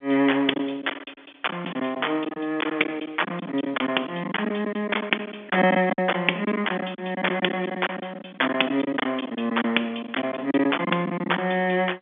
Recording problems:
telephone audio; 240 Hz to 3.5 kHz, G.711
packet loss; 12% of the sound replaced, filled with silence

